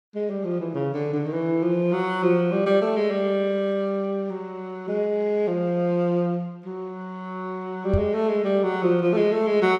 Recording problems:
knock on the microphone; at 8 s; peak +4 dB vs average level

